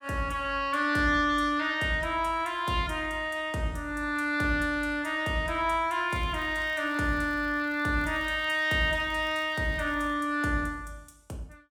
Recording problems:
crackling; from 6 to 10 s; loose cable, SNR 30 dB

